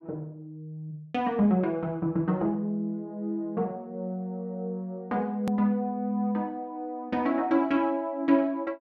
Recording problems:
edit click; at 5.5 s

